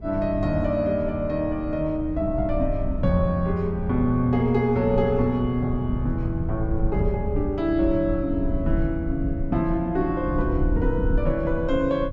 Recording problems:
rumble; below 100 Hz, SNR 6 dB

